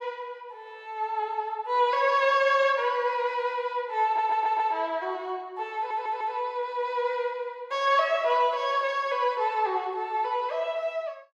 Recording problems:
stutter; at 4 s and at 6 s

